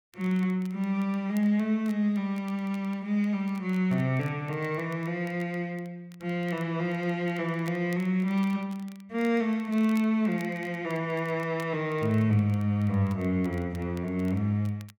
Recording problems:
crackling; vinyl, SNR 27 dB

